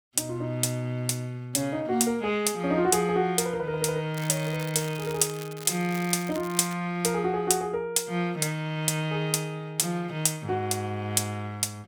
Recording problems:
crackle; from 4 to 6.5 s; loose cable, SNR 16 dB

